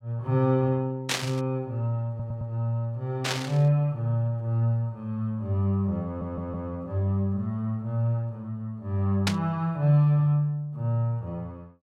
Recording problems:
burst of static; at 1 s, at 3 s and at 9.5 s; peak +5 dB vs average level
stutter; at 2 s and at 6 s

